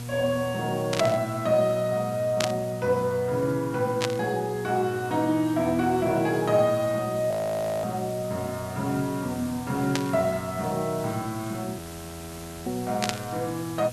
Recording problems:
hum; 60 Hz, harmonics up to 960 Hz, SNR 12 dB
hiss; slope -1 dB per octave, SNR 17 dB
static burst; 5 times, first at 1 s; peak +4 dB vs average level
audio freezing; at 7.5 s for 0.5 s and at 12 s for 1 s

